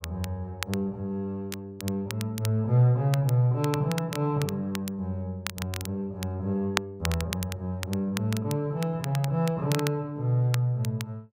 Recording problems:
crackling; vinyl, SNR 10 dB

